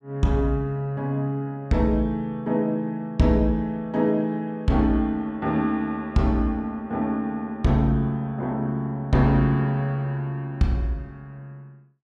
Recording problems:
none

